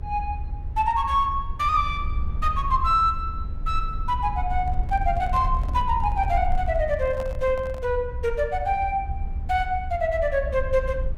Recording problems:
rumble; below 70 Hz, SNR 6 dB
handling noise; from 4.5 to 8 s; peak -9 dB vs average level

